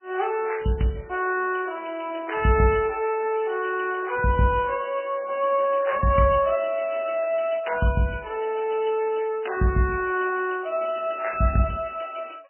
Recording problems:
lossy codec; MP3, log-spectral distance 6 dB, nothing above 2.4 kHz

